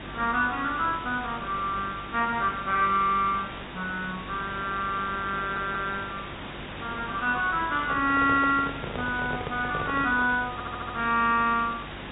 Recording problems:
low-pass filter; nothing above 4 kHz
electrical hum; 50 Hz, harmonics up to 350 Hz, SNR 18 dB
hiss; SNR 12 dB
stutter; at 5.5 s and at 11 s
handling noise; from 8 to 10 s; peak -4 dB vs average level

